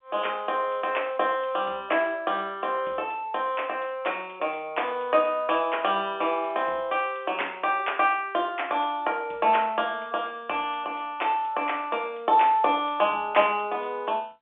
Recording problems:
telephone audio; 260 Hz to 3.5 kHz, G.711

